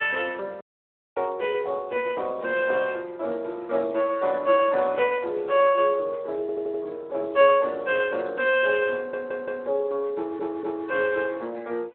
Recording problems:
telephone audio; 300 Hz to 3.1 kHz, Speex
audio cutting out; at 0.5 s for 0.5 s
audio stuttering; at 6.5 s, at 9 s and at 10 s

